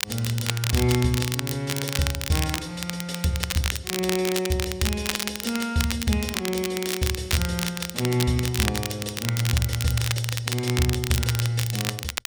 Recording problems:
crackle; vinyl, SNR 3 dB

